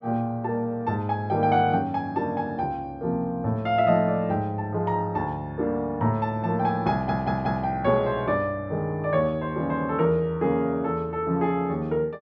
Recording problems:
stutter; at 7 s

